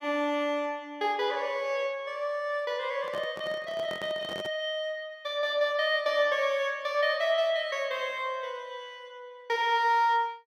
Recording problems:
microphone handling noise; from 3 to 4.5 s; peak -8 dB vs average level

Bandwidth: 16 kHz